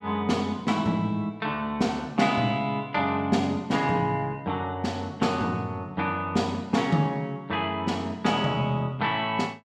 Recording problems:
none

